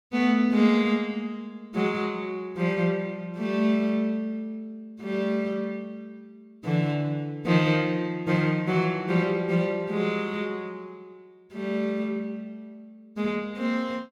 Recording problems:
none

